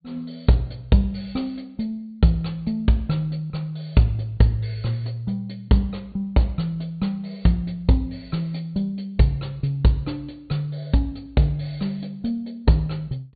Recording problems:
treble cut off; nothing above 4.5 kHz

